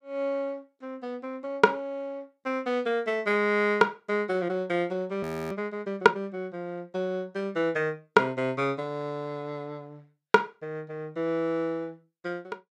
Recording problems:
frozen audio; at 5 s

